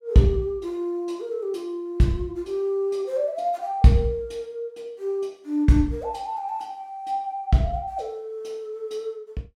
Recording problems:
none

